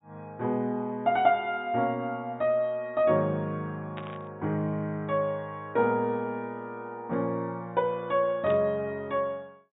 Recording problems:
treble cut off; nothing above 4 kHz
burst of static; at 4 s and at 8.5 s; peak -9 dB vs average level

